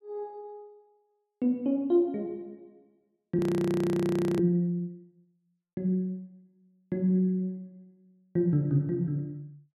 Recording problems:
frozen audio; at 3.5 s for 1 s

